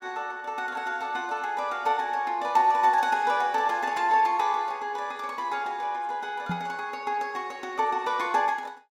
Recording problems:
microphone thump; at 6.5 s; peak -2 dB vs average level

